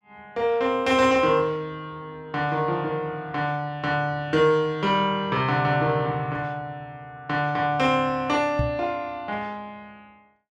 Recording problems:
knock on the microphone; at 8.5 s; peak +2 dB vs average level

